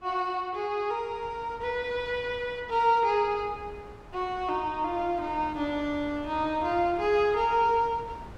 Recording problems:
wind noise; below 700 Hz, SNR 19 dB

